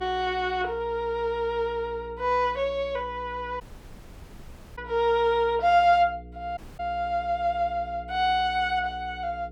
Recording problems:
hum; 60 Hz, harmonics up to 480 Hz, SNR 19 dB
audio cutting out; at 3.5 s for 1 s and at 6.5 s

